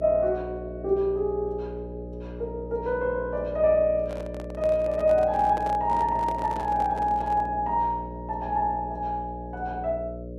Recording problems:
hum; 60 Hz, harmonics up to 600 Hz, SNR 12 dB
handling noise; from 4 to 7.5 s; peak -8 dB vs average level

